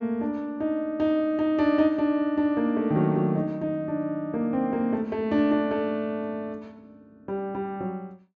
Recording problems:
low-pass filter; nothing above 8 kHz

